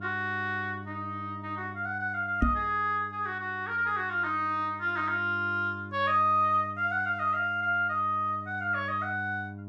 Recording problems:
hum; 50 Hz, harmonics up to 700 Hz, SNR 15 dB
knock on the microphone; at 2.5 s; peak +6 dB vs average level

